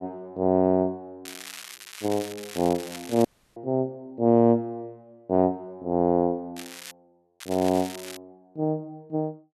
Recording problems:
crackling; from 1.5 to 3.5 s, at 6.5 s and at 7.5 s; loose cable, SNR 15 dB
dropout; at 3.5 s

